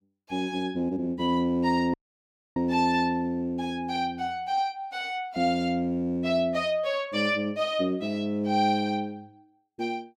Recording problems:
dropout; at 2 s for 0.5 s

